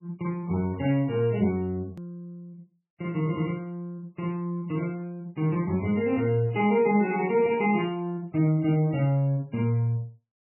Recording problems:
codec artefacts; MP3, log-spectral distance 2 dB, nothing above 2.8 kHz
edit click; at 2 s

